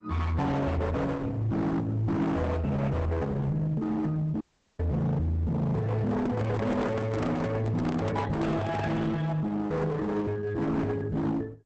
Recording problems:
lossy compression; Opus, log-spectral distance 2 dB, nothing above 8 kHz
distortion; hard clipping, signal-to-distortion ratio 7 dB
audio cutting out; at 4.5 s
microphone handling noise; from 6 to 9 s; peak +2 dB vs average level

